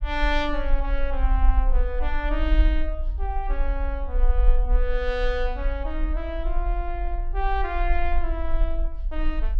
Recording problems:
low-frequency rumble; below 44 Hz, SNR -3 dB

